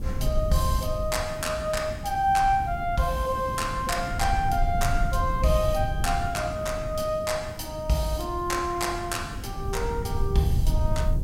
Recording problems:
hiss; SNR 29 dB
low-frequency rumble; below 88 Hz, SNR 6 dB
wind on the microphone; below 250 Hz, SNR 11 dB

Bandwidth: 16 kHz